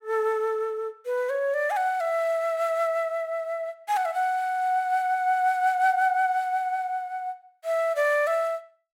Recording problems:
none

